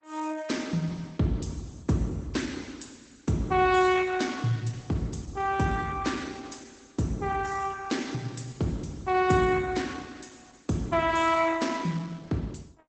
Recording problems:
codec artefacts; Opus, log-spectral distance 5 dB, nothing above 8 kHz

